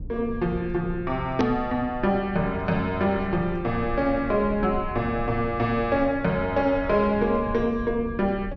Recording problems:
treble cut off; nothing above 6.3 kHz
low-frequency rumble; below 130 Hz, SNR 13 dB
click at an edit; at 1.5 s

